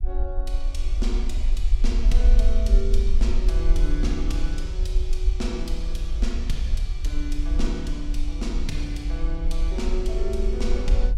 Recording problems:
rumble; below 48 Hz, SNR -7 dB

